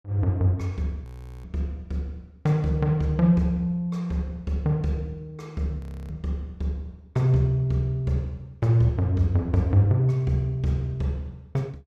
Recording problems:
audio freezing; at 1 s and at 6 s

